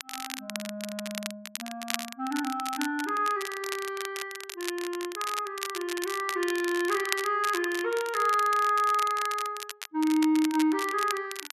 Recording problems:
crackling; vinyl, SNR 9 dB

